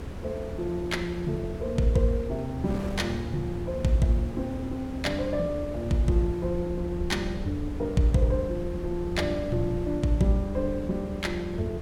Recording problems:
hum; 60 Hz, harmonics up to 540 Hz, SNR 18 dB
rumble; below 80 Hz, SNR 11 dB
wind on the microphone; below 430 Hz, SNR 12 dB

